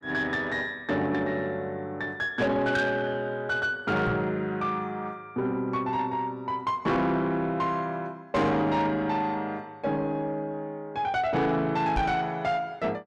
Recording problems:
distortion; soft clipping, signal-to-distortion ratio 11 dB
microphone bump; at 4 s and at 12 s; peak +1 dB vs average level

